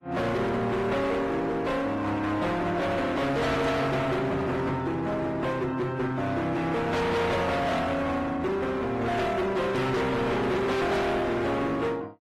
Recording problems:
lossy compression; AAC, then AAC, log-spectral distance 3 dB, nothing above 13.1 kHz
distortion; hard clipping, signal-to-distortion ratio 6 dB

